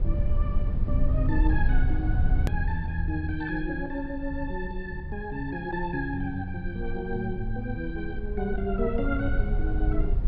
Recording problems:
treble cut off; nothing above 5.4 kHz
low-frequency rumble; below 68 Hz, SNR -1 dB
click at an edit; at 2.5 s

